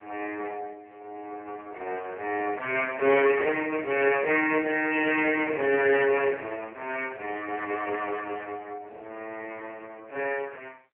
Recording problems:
telephone audio; 300 Hz to 3 kHz, AMR-NB

